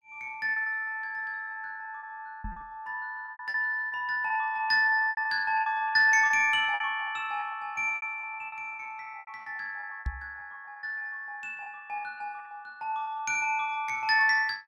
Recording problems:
lost packets; 13% of the sound replaced, filled with repeated pitch periods
microphone bump; at 2.5 s and at 10 s; peak -1 dB vs average level

